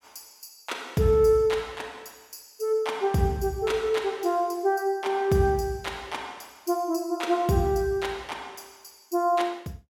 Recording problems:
none

